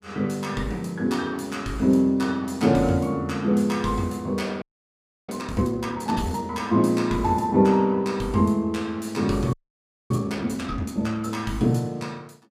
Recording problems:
frozen audio; at 4.5 s for 0.5 s and at 9.5 s for 0.5 s

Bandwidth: 15.5 kHz